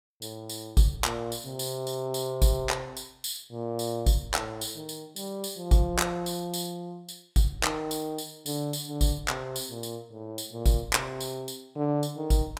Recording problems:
none

